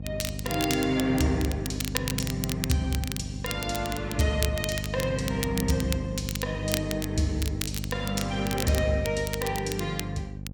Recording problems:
hum; 50 Hz, harmonics up to 550 Hz, SNR 6 dB
crackling; vinyl, SNR 7 dB

